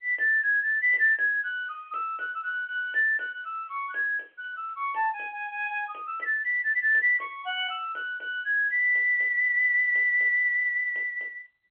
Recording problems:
phone line; 340 Hz to 3.3 kHz, G.711

